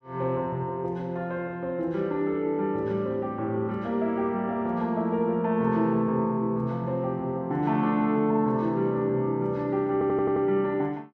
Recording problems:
stutter; at 10 s

